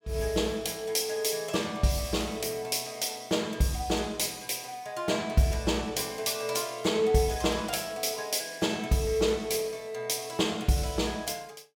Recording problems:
none

